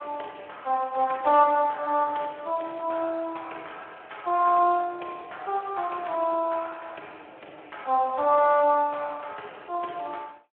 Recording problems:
phone line; 260 Hz to 3.3 kHz, Speex

